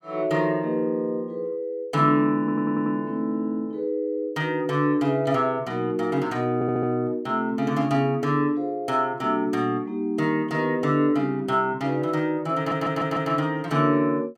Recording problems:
stutter; at 2.5 s, at 6.5 s and at 13 s

